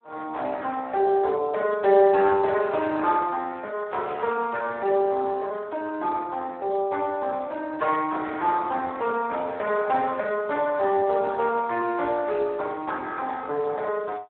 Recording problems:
phone line; 320 Hz to 3.9 kHz, Speex

